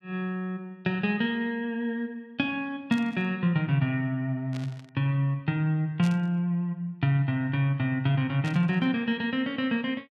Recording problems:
static burst; 4 times, first at 3 s; peak -10 dB vs average level

